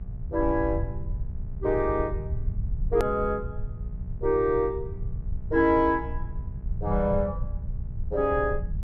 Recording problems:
hum; 60 Hz, harmonics up to 660 Hz, SNR 18 dB
low-frequency rumble; below 88 Hz, SNR 8 dB
hard cut with a click; at 3 s

